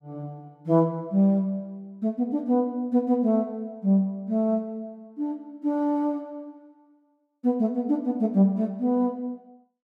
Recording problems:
none

